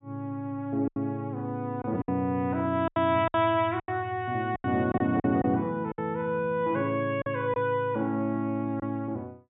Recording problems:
low-pass filter; nothing above 4 kHz
lost packets; 8% of the sound replaced, filled with silence

